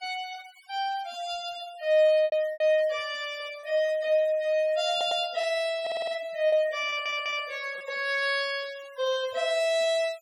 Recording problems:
denoising artefacts; signal-to-artefact ratio 23 dB
packet loss; 4% of the sound replaced, filled with repeated pitch periods
stutter; at 5 s, at 6 s and at 7 s

